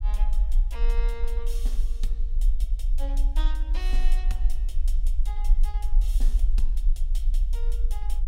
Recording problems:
low-frequency rumble; below 40 Hz, strongest tone 22 Hz, SNR -15 dB

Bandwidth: 16 kHz